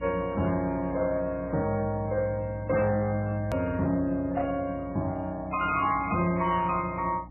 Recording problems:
codec artefacts; MP3, log-spectral distance 3 dB, nothing above 2.5 kHz
distorted audio; hard clipping, uneven, signal-to-distortion ratio 11 dB
hum; 60 Hz, harmonics up to 300 Hz, SNR 17 dB
hard cut with a click; at 3.5 s

